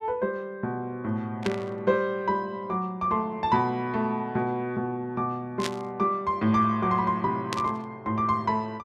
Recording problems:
burst of static; at 1.5 s, at 5.5 s and at 7.5 s; peak +1 dB vs average level

